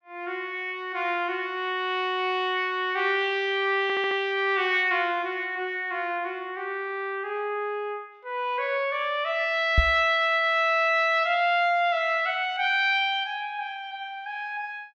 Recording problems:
stutter; at 4 s
microphone thump; at 10 s; peak +6 dB vs average level

